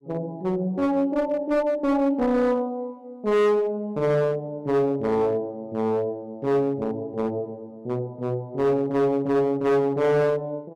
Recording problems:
distorted audio; hard clipping, uneven, signal-to-distortion ratio 7 dB

